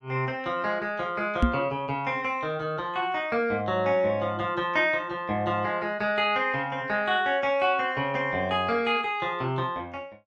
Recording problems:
microphone thump; at 1.5 s; peak +7 dB vs average level

